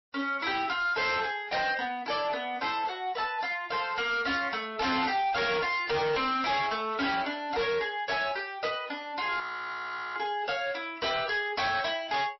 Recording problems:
lossy compression; MP3, then MP3, log-spectral distance 4 dB, nothing above 5.7 kHz
distortion; hard clipping, signal-to-distortion ratio 8 dB
audio freezing; at 9.5 s for 1 s

